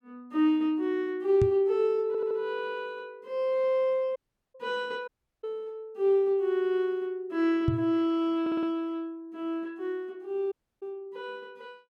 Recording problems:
microphone thump; at 1.5 s and at 7.5 s; peak +5 dB vs average level
stutter; at 2 s and at 8.5 s
dropout; at 4 s, at 5 s and at 11 s

